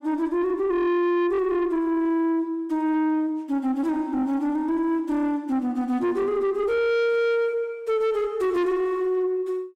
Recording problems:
distorted audio; soft clipping, signal-to-distortion ratio 11 dB

